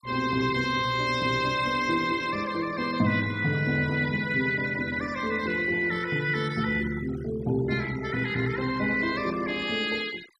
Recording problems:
denoising artefacts; signal-to-artefact ratio 17 dB

